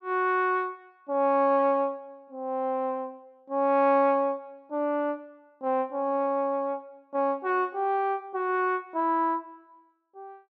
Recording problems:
none

